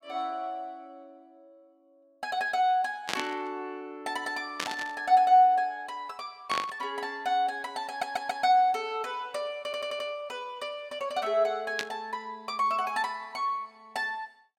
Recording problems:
static burst; 4 times, first at 3 s; peak +3 dB vs average level
audio stuttering; at 8 s and at 9.5 s

